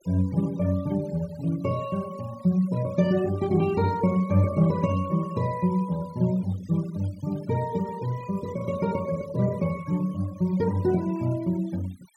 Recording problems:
noise reduction artefacts; signal-to-artefact ratio 22 dB

